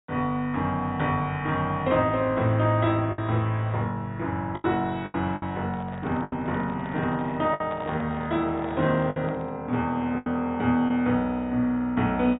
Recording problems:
treble missing; nothing above 4 kHz
packet loss; 5% of the sound replaced, filled with the last packet
handling noise; from 5.5 to 9.5 s; peak -7 dB vs average level

